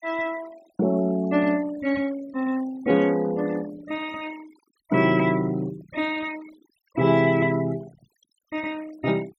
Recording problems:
noise reduction artefacts; signal-to-artefact ratio 19 dB

